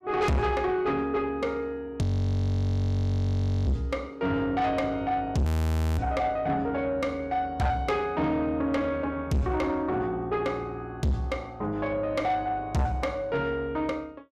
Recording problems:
distortion; soft clipping, signal-to-distortion ratio 6 dB
frozen audio; at 2 s for 1.5 s and at 5.5 s for 0.5 s

